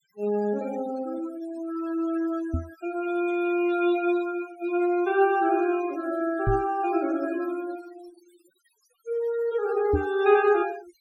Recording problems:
noise reduction artefacts; signal-to-artefact ratio 18 dB
microphone bump; at 2.5 s, at 6.5 s and at 10 s; peak +3 dB vs average level

